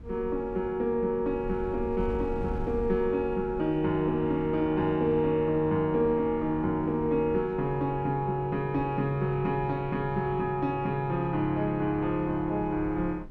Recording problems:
wind on the microphone; below 140 Hz, SNR 15 dB

